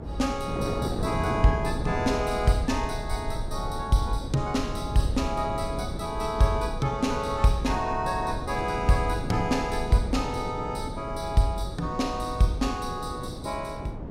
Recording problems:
low-frequency rumble; below 80 Hz, SNR 11 dB
wind noise; below 440 Hz, SNR 8 dB

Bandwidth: 16 kHz